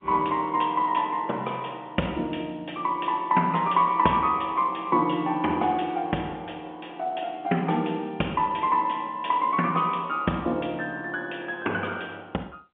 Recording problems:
phone line; 170 Hz to 3.4 kHz, G.711

